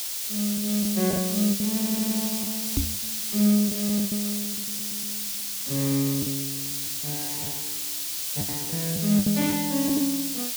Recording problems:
hiss; SNR 1 dB
packet loss; 11% of the sound replaced, filled with the last packet
audio stuttering; at 1.5 s and at 4.5 s
microphone thump; at 3 s; peak +4 dB vs average level

